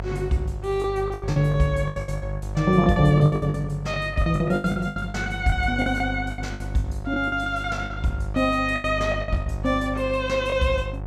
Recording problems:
hum; 50 Hz, harmonics up to 900 Hz, SNR 9 dB
lost packets; 16% of the sound replaced, filled with the last packet

